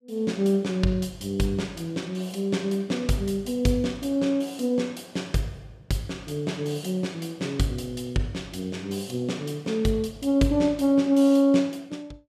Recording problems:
none

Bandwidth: 14.5 kHz